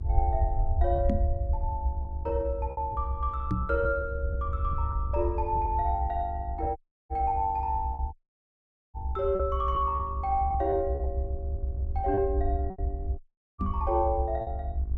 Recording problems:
electrical hum; 50 Hz, harmonics up to 1.1 kHz, SNR 20 dB
rumble; below 72 Hz, SNR 2 dB
packet loss; 5% of the sound replaced, filled with repeated pitch periods
microphone thump; at 1 s, at 3.5 s and at 14 s; peak +5 dB vs average level
audio cutting out; at 7 s, at 8 s for 1 s and at 13 s

